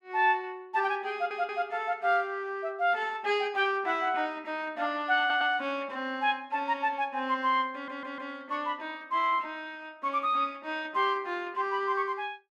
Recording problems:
stutter; at 1 s, at 5 s and at 7.5 s

